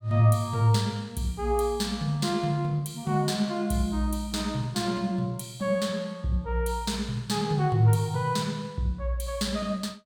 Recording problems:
none

